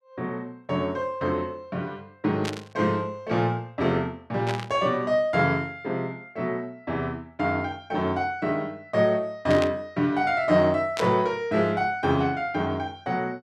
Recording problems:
static burst; 4 times, first at 2.5 s; peak -1 dB vs average level

